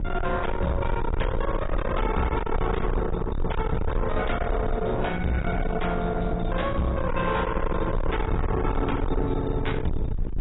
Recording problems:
lossy codec; AAC, log-spectral distance 2 dB, nothing above 3.8 kHz
distorted audio; soft clipping, signal-to-distortion ratio 5 dB
electrical hum; 60 Hz, harmonics up to 1 kHz, SNR 10 dB
rumble; below 280 Hz, SNR 3 dB

